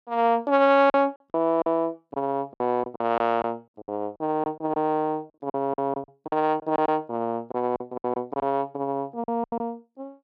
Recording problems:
packet loss; 11% of the sound replaced, filled with silence

